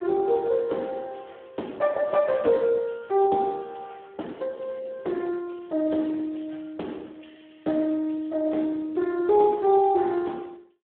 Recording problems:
phone line; 220 Hz to 3.4 kHz, Speex

